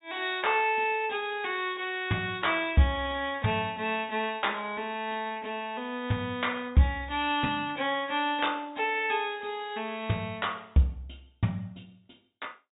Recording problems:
treble missing; nothing above 4 kHz

